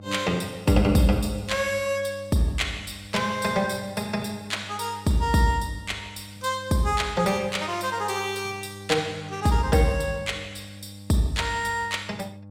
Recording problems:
hum; 50 Hz, harmonics up to 800 Hz, SNR 18 dB

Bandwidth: 16.5 kHz